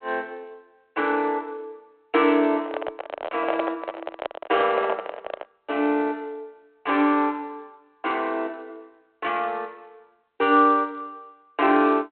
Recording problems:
phone line; 240 Hz to 3.3 kHz, G.726
microphone handling noise; from 2.5 to 5.5 s; peak +2 dB vs average level

